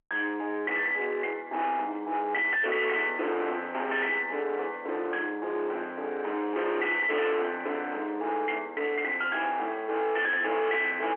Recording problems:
telephone audio; 280 Hz to 3.3 kHz, G.711
distortion; hard clipping, signal-to-distortion ratio 7 dB

